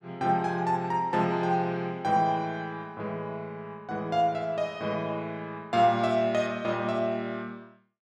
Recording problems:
none

